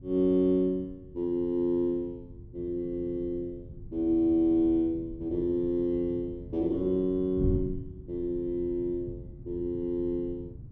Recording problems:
wind noise; below 140 Hz, SNR 14 dB

